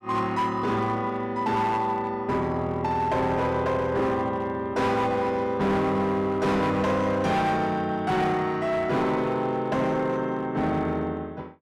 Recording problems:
distortion; hard clipping, signal-to-distortion ratio 10 dB

